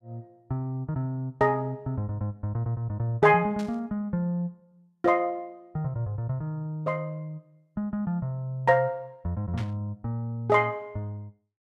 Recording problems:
burst of static; at 3.5 s and at 9.5 s; peak -10 dB vs average level

